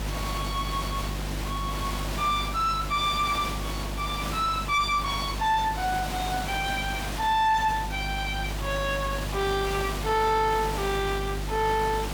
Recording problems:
distorted audio; soft clipping, signal-to-distortion ratio 10 dB
hum; 50 Hz, harmonics up to 350 Hz, SNR 8 dB
hiss; slope -3 dB per octave, SNR 8 dB

